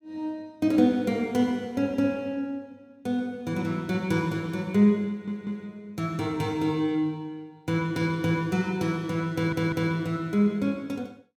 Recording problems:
audio stuttering; at 5 s and at 9.5 s

